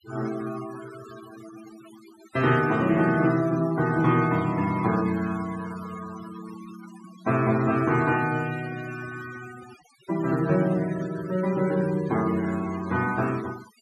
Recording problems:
noise reduction artefacts; signal-to-artefact ratio 17 dB

